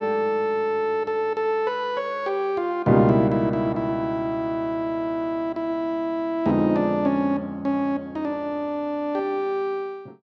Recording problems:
none

